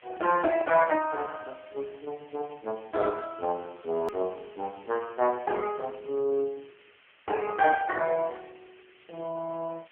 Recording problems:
telephone audio; 240 Hz to 3.1 kHz, AMR-NB
background hiss; SNR 27 dB
edit click; at 4 s

